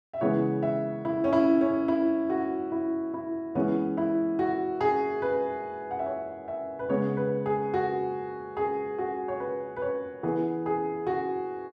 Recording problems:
none

